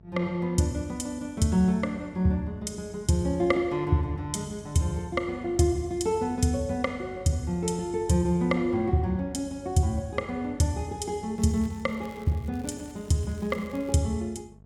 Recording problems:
electrical hum; 50 Hz, harmonics up to 850 Hz, SNR 22 dB
crackling; from 11 to 14 s; loose cable, SNR 27 dB

